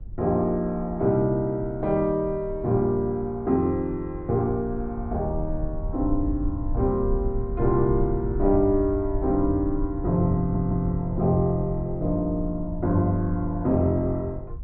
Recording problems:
treble cut off; nothing above 4.7 kHz
low-frequency rumble; below 72 Hz, SNR 10 dB
audio stuttering; at 10 s

